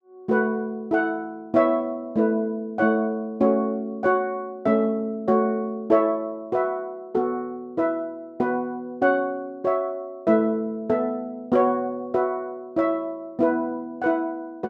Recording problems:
none

